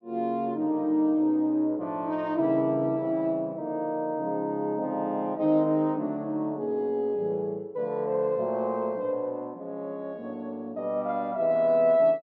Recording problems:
treble missing; nothing above 8 kHz

